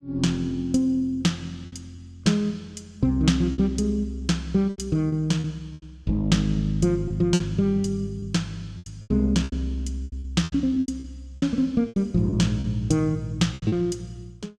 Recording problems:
packet loss; 10% of the sound replaced, filled with repeated pitch periods

